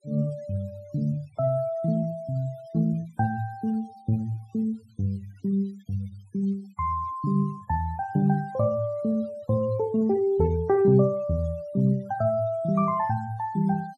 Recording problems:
noise reduction artefacts; signal-to-artefact ratio 28 dB

